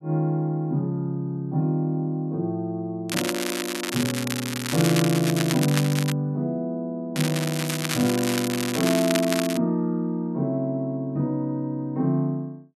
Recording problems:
crackle; from 3 to 6 s and from 7 to 9.5 s; loose cable, SNR 4 dB

